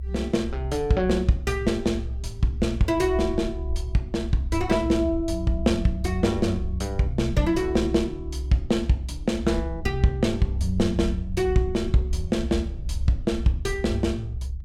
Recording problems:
rumble; below 68 Hz, strongest tone 64 Hz, SNR 7 dB

